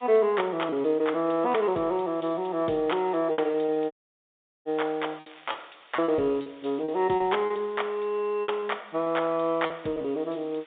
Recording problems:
phone line; 220 Hz to 3.7 kHz, G.711
background hiss; SNR 27 dB
lost packets; 8% of the sound replaced, filled with repeated pitch periods
audio cutting out; at 4 s for 0.5 s
crackling; at 5.5 s; loose cable, SNR 29 dB

